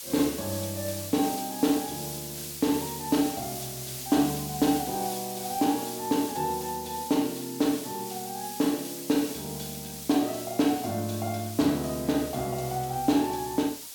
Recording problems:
background hiss; slope +3 dB per octave, SNR 8 dB

